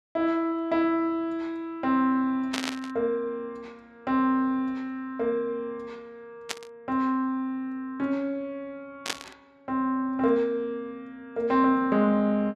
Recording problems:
burst of static; at 2.5 s, at 6.5 s and at 9 s; peak +3 dB vs average level

